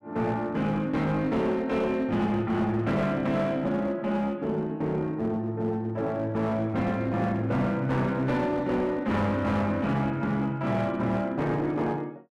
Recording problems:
distortion; hard clipping, uneven, signal-to-distortion ratio 10 dB

